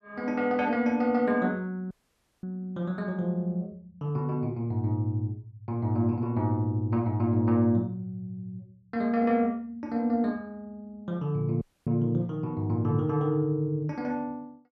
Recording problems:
dropout; at 2 s for 0.5 s and at 12 s

